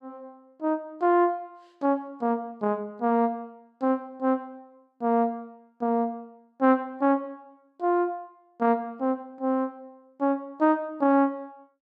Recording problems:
none

